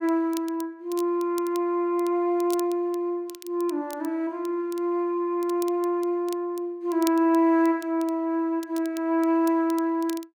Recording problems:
crackle; vinyl, SNR 20 dB

